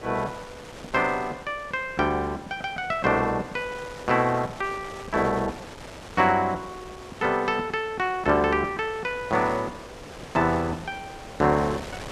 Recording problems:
wind on the microphone; below 2.5 kHz, SNR 16 dB

